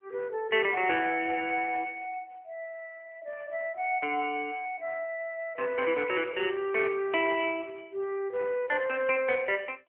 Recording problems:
phone line; 300 Hz to 3.1 kHz, AMR-NB

